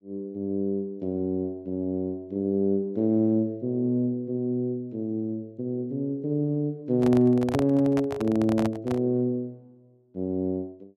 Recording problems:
handling noise; from 7 to 9 s; peak 0 dB vs average level

